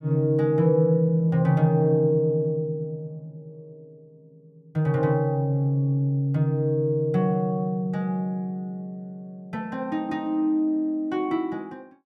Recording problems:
none

